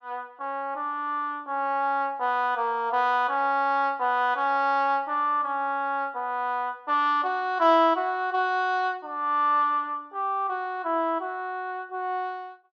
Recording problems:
none

